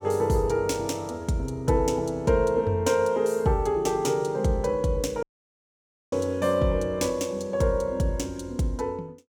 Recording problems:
audio cutting out; at 5 s for 1 s

